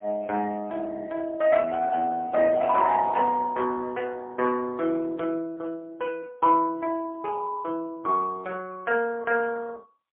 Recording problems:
telephone audio; 260 Hz to 3.4 kHz, AMR-NB, then MP3

